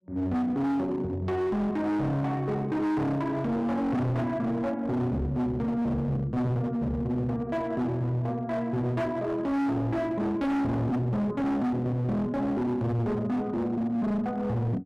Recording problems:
distortion; hard clipping, signal-to-distortion ratio 7 dB

